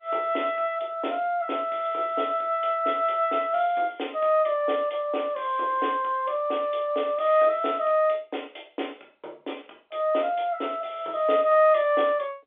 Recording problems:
phone line; 300 Hz to 3.7 kHz, G.711

